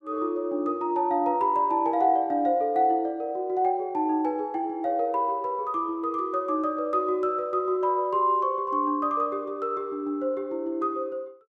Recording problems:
none

